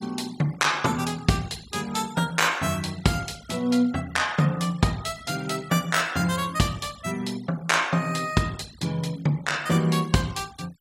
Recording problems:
denoising artefacts; signal-to-artefact ratio 21 dB

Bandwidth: 16.5 kHz